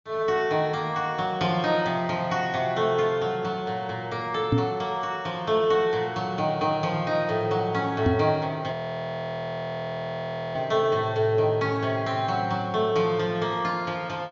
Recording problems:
treble missing; nothing above 7.3 kHz
knock on the microphone; at 4.5 s and at 8 s; peak +6 dB vs average level
audio freezing; at 8.5 s for 2 s

